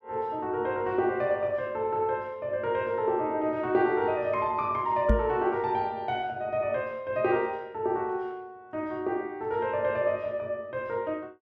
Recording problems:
microphone thump; at 5 s; peak +8 dB vs average level

